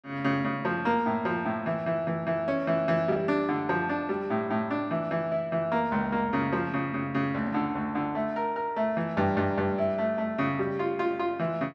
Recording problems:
lost packets; 0.7% of the sound replaced, filled with the last packet

